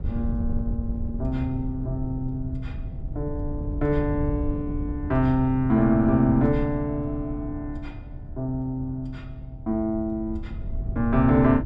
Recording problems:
wind noise; below 98 Hz, SNR 7 dB

